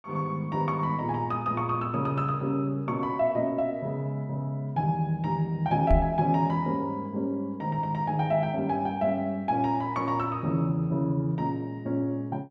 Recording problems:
microphone bump; at 6 s; peak +6 dB vs average level

